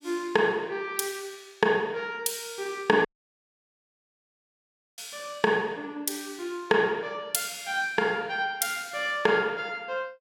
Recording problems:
audio cutting out; at 3 s for 2 s

